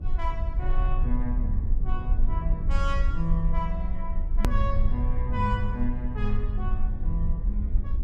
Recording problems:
low-frequency rumble; below 52 Hz, strongest tone 22 Hz, SNR -4 dB
edit click; at 4.5 s

